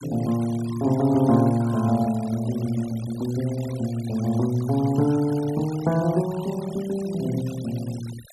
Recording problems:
denoising artefacts; signal-to-artefact ratio 19 dB

